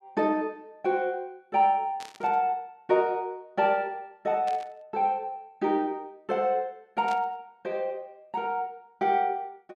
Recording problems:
burst of static; at 2 s, at 4.5 s and at 7 s; peak -10 dB vs average level

